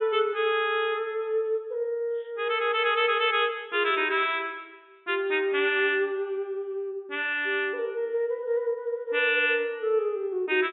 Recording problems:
treble missing; nothing above 3.7 kHz

